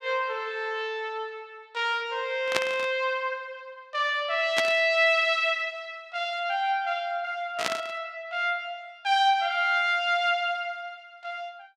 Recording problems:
burst of static; at 2.5 s, at 4.5 s and at 7.5 s; peak +5 dB vs average level

